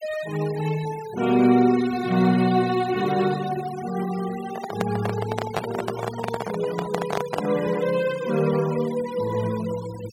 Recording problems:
noise reduction artefacts; signal-to-artefact ratio 16 dB
handling noise; from 4.5 to 7.5 s; peak +3 dB vs average level

